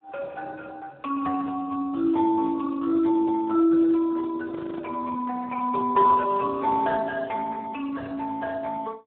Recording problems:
telephone audio; 300 Hz to 2.1 kHz, Speex
audio freezing; at 4.5 s

